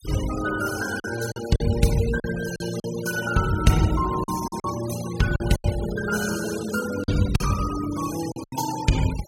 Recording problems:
noise reduction artefacts; signal-to-artefact ratio 11 dB
packet loss; 7% of the sound replaced, filled with silence

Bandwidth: 16.5 kHz